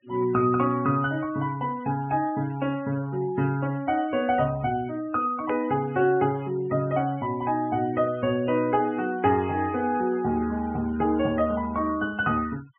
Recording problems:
treble missing; nothing above 3.1 kHz
noise reduction artefacts; signal-to-artefact ratio 22 dB
click at an edit; at 5.5 s

